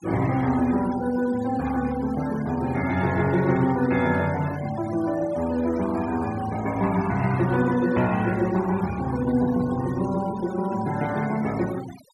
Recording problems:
denoising artefacts; signal-to-artefact ratio 17 dB

